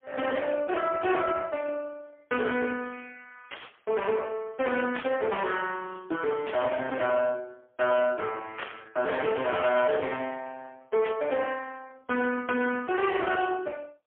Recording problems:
phone line; 280 Hz to 3.3 kHz, AMR-NB, then MP3
distortion; hard clipping, uneven, signal-to-distortion ratio 11 dB
burst of static; 5 times, first at 3.5 s; peak -3 dB vs average level

